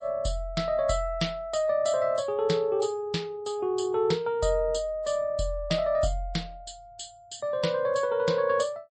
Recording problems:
lossy compression; MP3, log-spectral distance 2 dB, nothing above 8.2 kHz

